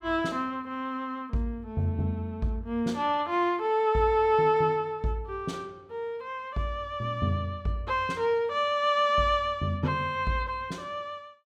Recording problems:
none

